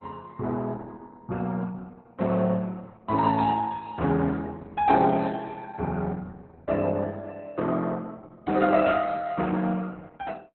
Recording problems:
lossy compression; Opus, log-spectral distance 3 dB, nothing above 4 kHz

